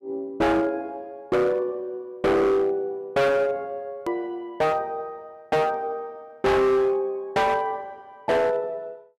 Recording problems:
distortion; hard clipping, signal-to-distortion ratio 6 dB
edit click; at 4 s

